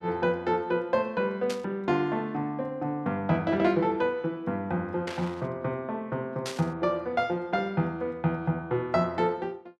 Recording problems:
burst of static; at 1.5 s, at 5 s and at 6.5 s; peak -3 dB vs average level

